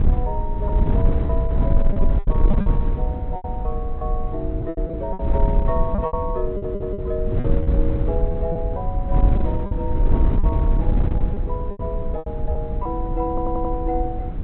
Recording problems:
treble missing; nothing above 4 kHz
wind noise; below 76 Hz, SNR -5 dB
packet loss; 8% of the sound replaced, filled with repeated pitch periods
stutter; at 6.5 s and at 13 s

